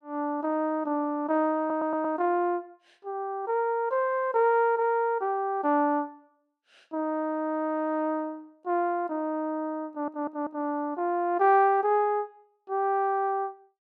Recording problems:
stutter; at 1.5 s and at 10 s

